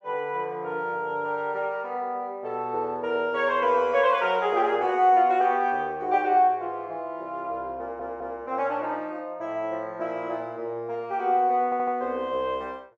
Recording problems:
stutter; at 8 s and at 12 s

